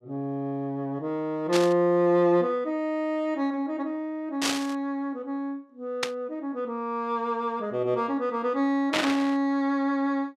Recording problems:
static burst; 4 times, first at 1.5 s; peak +5 dB vs average level

